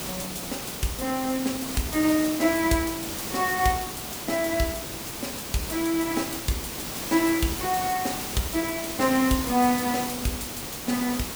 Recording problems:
background hiss; slope -3 dB per octave, SNR 5 dB

